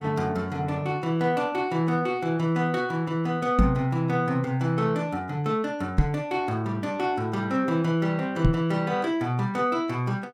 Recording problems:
microphone bump; at 3.5 s, at 6 s and at 8.5 s; peak +9 dB vs average level

